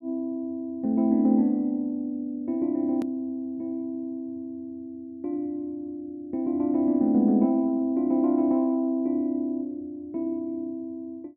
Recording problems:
hard cut with a click; at 3 s

